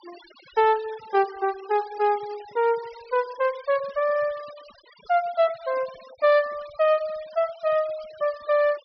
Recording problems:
treble cut off; nothing above 5.5 kHz
denoising artefacts; signal-to-artefact ratio 22 dB

